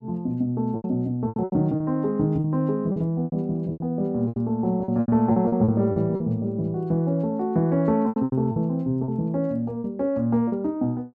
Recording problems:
packet loss; 11% of the sound replaced, filled with repeated pitch periods

